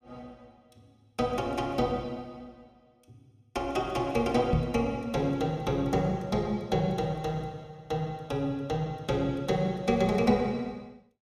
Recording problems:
microphone bump; at 4.5 s; peak +6 dB vs average level

